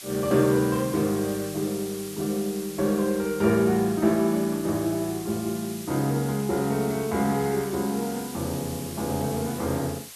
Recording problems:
hiss; slope +2 dB per octave, SNR 13 dB

